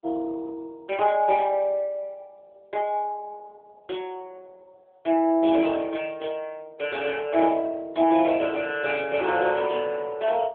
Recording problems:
telephone audio; 280 Hz to 3.4 kHz, AMR-NB

